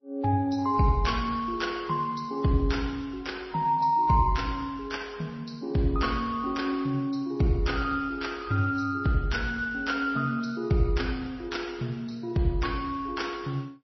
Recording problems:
lossy codec; MP3, then Vorbis, log-spectral distance 3 dB, nothing above 5.8 kHz

